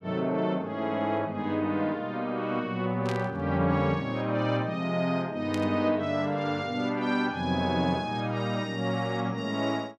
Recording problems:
static burst; at 3 s and at 5.5 s; peak -6 dB vs average level

